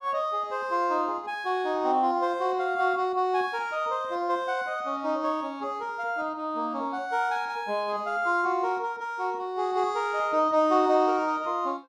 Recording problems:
none

